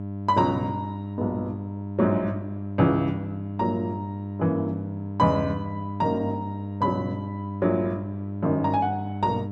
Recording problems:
hum; 50 Hz, harmonics up to 1 kHz, SNR 6 dB

